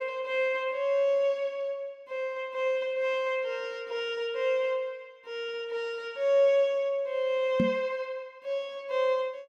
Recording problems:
microphone bump; at 7.5 s; peak +5 dB vs average level

